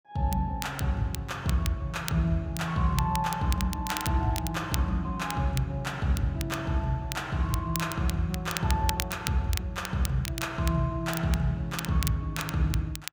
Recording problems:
crackle; vinyl, SNR 10 dB

